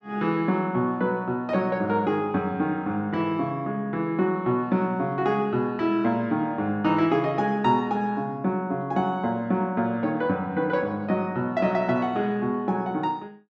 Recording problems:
none

